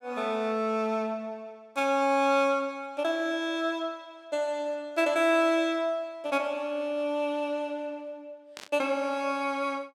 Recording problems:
burst of static; at 8.5 s; peak -9 dB vs average level

